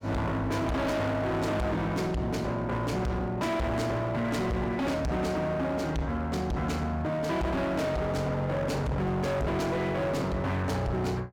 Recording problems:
distortion; hard clipping, signal-to-distortion ratio 6 dB

